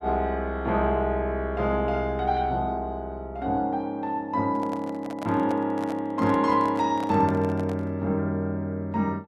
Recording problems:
handling noise; from 4.5 to 8 s; peak -7 dB vs average level

